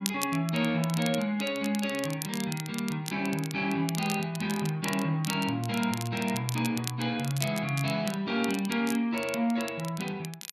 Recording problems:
crackling; vinyl, SNR 11 dB

